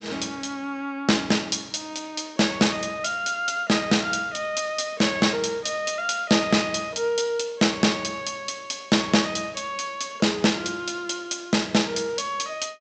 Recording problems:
low-pass filter; nothing above 8 kHz

